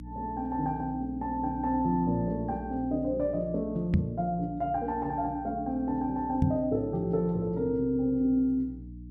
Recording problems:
electrical hum; 60 Hz, harmonics up to 300 Hz, SNR 14 dB
knock on the microphone; at 4 s and at 6.5 s; peak +8 dB vs average level

